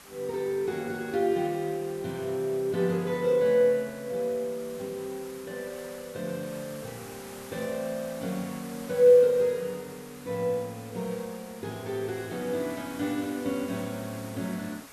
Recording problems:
hiss; SNR 18 dB

